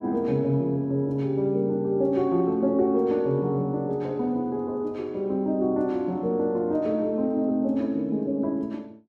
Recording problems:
none

